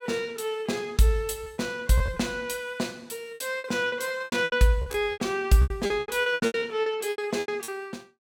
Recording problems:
lost packets; 16% of the sound replaced, filled with repeated pitch periods

